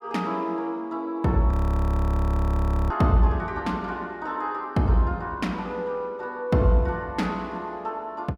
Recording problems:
audio freezing; at 1.5 s for 1.5 s

